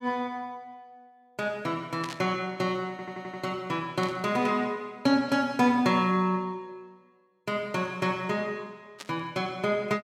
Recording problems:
burst of static; at 2 s, at 4 s and at 9 s; peak -7 dB vs average level
audio stuttering; at 3 s

